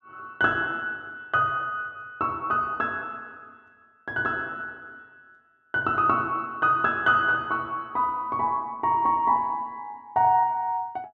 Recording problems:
none

